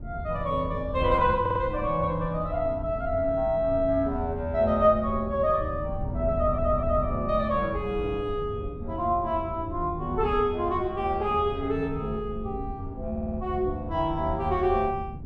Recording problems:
wind noise; below 140 Hz, SNR 10 dB
audio stuttering; at 1.5 s, at 6.5 s and at 13 s

